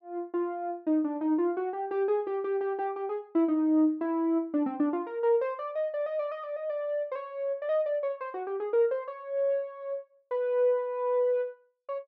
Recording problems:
none

